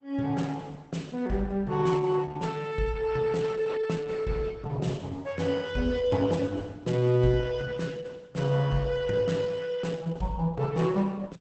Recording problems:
lossy compression; Opus, log-spectral distance 3 dB, nothing above 8.2 kHz

